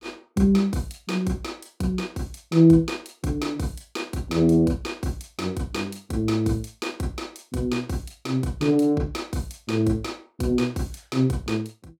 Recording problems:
none

